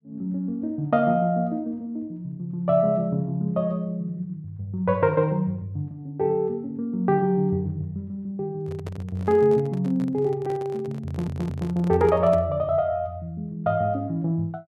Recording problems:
microphone handling noise; from 8.5 to 12 s; peak -7 dB vs average level
stutter; at 11 s

